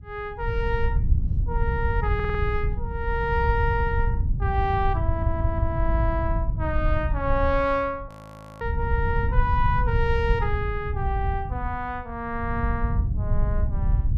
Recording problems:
wind on the microphone; below 98 Hz, SNR -1 dB
stutter; at 2 s and at 5 s
frozen audio; at 8 s for 0.5 s

